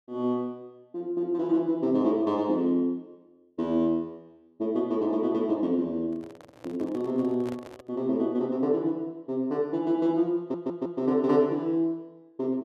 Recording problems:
microphone handling noise; from 6 to 8 s; peak -10 dB vs average level
stutter; at 10 s

